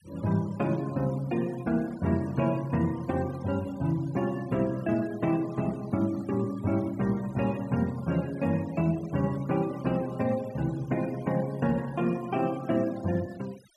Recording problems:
denoising artefacts; signal-to-artefact ratio 21 dB

